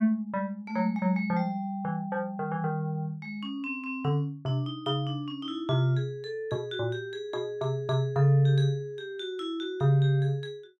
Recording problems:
none

